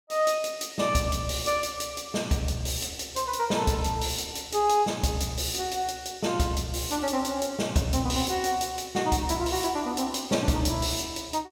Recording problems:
none

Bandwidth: 17 kHz